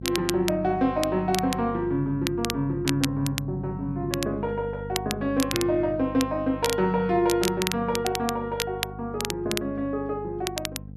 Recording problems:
hum; 50 Hz, harmonics up to 500 Hz, SNR 12 dB
crackle; vinyl, SNR 7 dB

